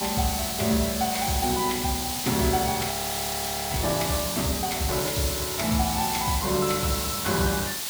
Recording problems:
background hiss; SNR 1 dB
frozen audio; at 3 s for 1 s

